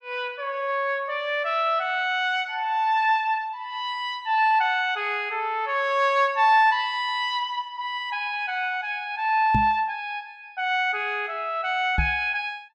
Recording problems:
microphone bump; at 9.5 s and at 12 s; peak +2 dB vs average level

